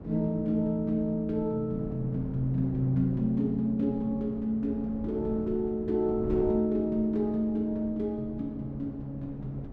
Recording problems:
wind noise; below 290 Hz, SNR 13 dB

